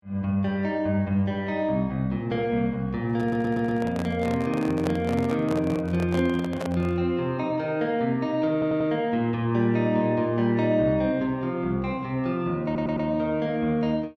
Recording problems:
microphone handling noise; from 3 to 7 s; peak -2 dB vs average level
stutter; at 3 s, at 8.5 s and at 13 s

